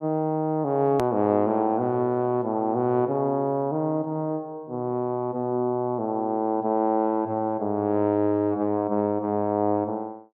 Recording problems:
click at an edit; at 1 s

